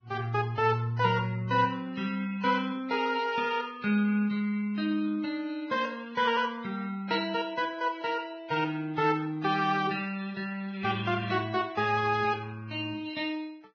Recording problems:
lossy compression; Vorbis, log-spectral distance 3 dB, nothing above 6 kHz

